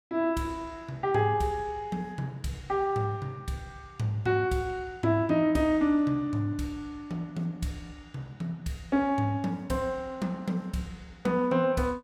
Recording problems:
none

